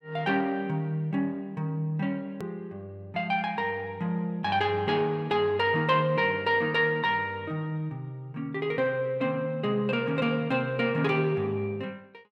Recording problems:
edit click; at 2.5 s

